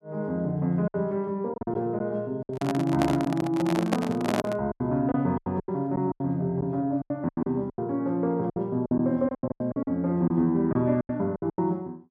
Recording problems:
lost packets; 13% of the sound replaced, filled with silence
handling noise; from 2.5 to 4.5 s; peak +4 dB vs average level

